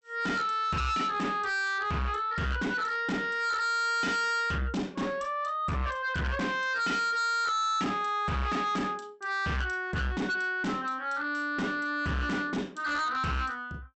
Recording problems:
treble cut off; nothing above 8 kHz
distorted audio; soft clipping, signal-to-distortion ratio 6 dB

